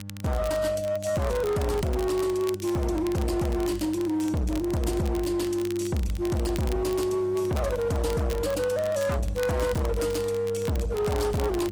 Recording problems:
lossy compression; AAC, log-spectral distance 2 dB, nothing above 15.1 kHz
distorted audio; hard clipping, signal-to-distortion ratio 7 dB
mains hum; 50 Hz, harmonics up to 600 Hz, SNR 14 dB
crackle; vinyl, SNR 17 dB

